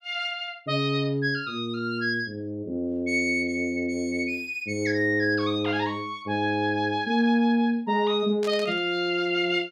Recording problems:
static burst; at 8.5 s; peak -9 dB vs average level

